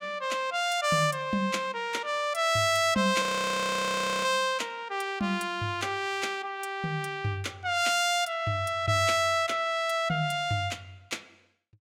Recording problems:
audio freezing; at 3 s for 1 s

